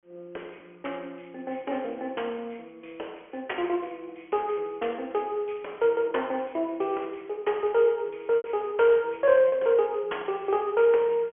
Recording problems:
telephone audio; 340 Hz to 3.8 kHz, G.726
packet loss; 1.1% of the sound replaced, filled with repeated pitch periods

